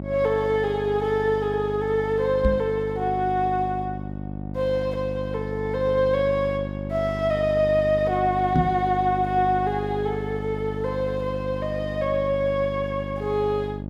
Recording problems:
hum; 50 Hz, harmonics up to 900 Hz, SNR 8 dB
knock on the microphone; at 2.5 s and at 8.5 s; peak +6 dB vs average level

